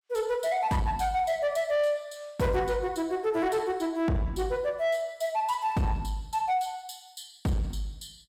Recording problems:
distortion; soft clipping, signal-to-distortion ratio 11 dB

